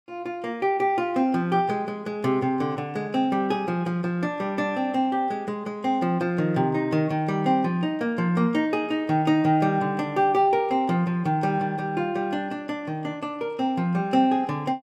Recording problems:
none

